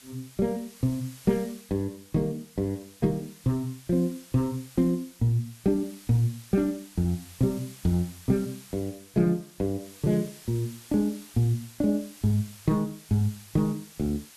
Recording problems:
background hiss; slope +1 dB per octave, SNR 20 dB

